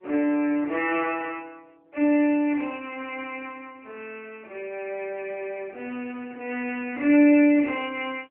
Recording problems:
phone line; 260 Hz to 3.1 kHz, AMR-NB

